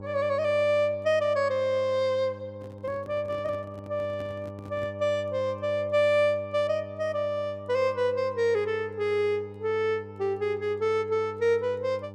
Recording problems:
mains hum; 50 Hz, harmonics up to 1 kHz, SNR 16 dB
handling noise; from 2.5 to 5 s; peak -12 dB vs average level

